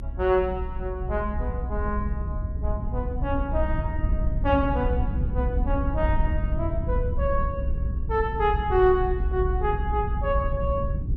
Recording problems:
low-frequency rumble; below 84 Hz, SNR 1 dB

